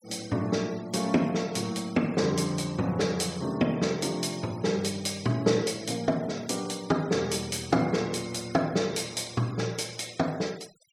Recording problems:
denoising artefacts; signal-to-artefact ratio 21 dB

